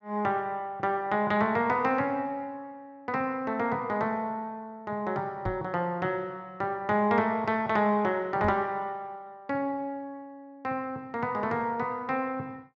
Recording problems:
microphone bump; at 5.5 s and at 8.5 s; peak -1 dB vs average level

